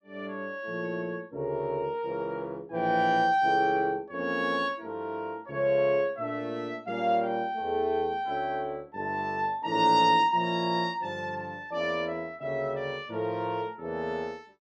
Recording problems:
none

